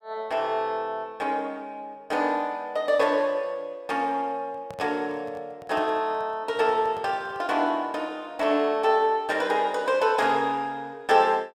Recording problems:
handling noise; from 4.5 to 8 s; peak -11 dB vs average level

